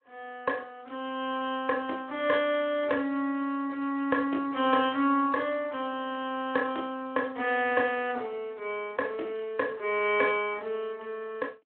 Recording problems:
telephone audio; 240 Hz to 3.2 kHz, Speex

